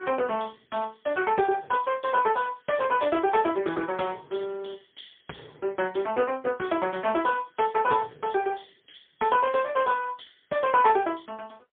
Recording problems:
telephone audio; 280 Hz to 3.3 kHz, AMR-NB, then MP3

